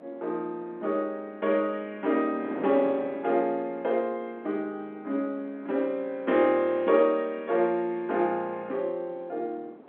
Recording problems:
telephone audio; 220 Hz to 3.5 kHz, G.711
wind on the microphone; below 610 Hz, SNR 16 dB

